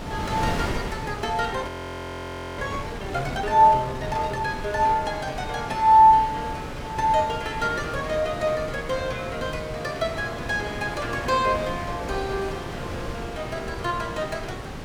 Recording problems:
wind noise; below 940 Hz, SNR 10 dB
frozen audio; at 1.5 s for 1 s

